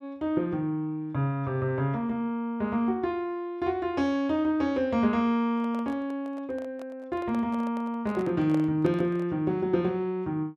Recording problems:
handling noise; from 5.5 to 9.5 s; peak -6 dB vs average level

